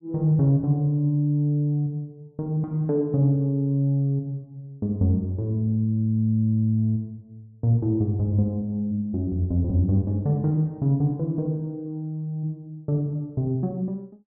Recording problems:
none

